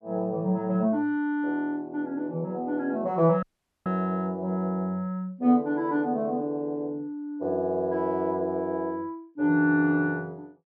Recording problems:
audio cutting out; at 3.5 s

